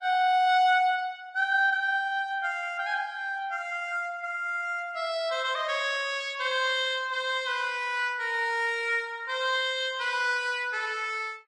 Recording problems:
lossy compression; Vorbis, log-spectral distance 2 dB

